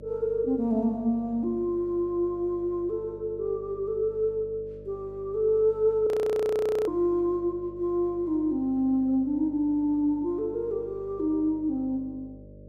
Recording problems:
hum; 50 Hz, harmonics up to 600 Hz, SNR 20 dB
frozen audio; at 6 s for 1 s

